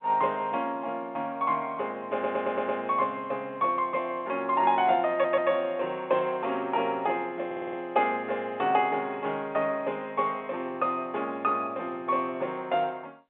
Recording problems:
phone line; 300 Hz to 3.7 kHz, G.711
stutter; at 2 s, at 5 s and at 7.5 s

